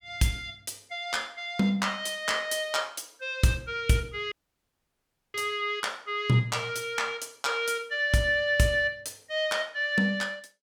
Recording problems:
audio cutting out; at 4.5 s for 1 s

